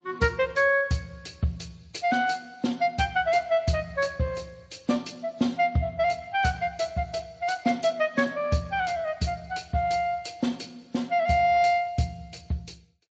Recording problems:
lossy codec; MP3, then Speex, log-spectral distance 4 dB, nothing above 7.6 kHz

